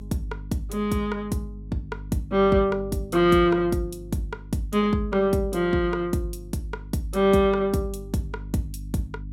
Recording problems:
hum; 50 Hz, harmonics up to 300 Hz, SNR 15 dB

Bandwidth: 16 kHz